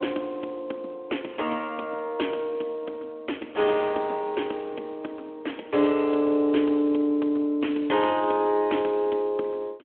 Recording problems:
telephone audio; 240 Hz to 3.3 kHz, Speex

